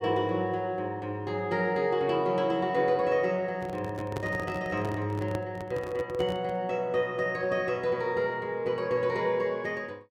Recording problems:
microphone handling noise; from 3.5 to 6.5 s; peak -1 dB vs average level

